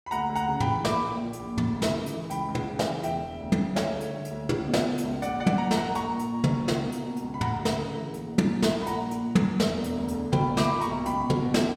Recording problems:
none

